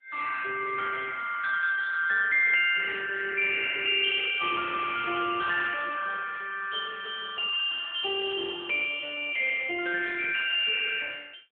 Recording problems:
phone line; 840 Hz to 2.8 kHz, AMR-NB

